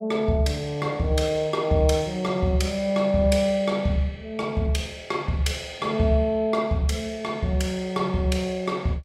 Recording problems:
none

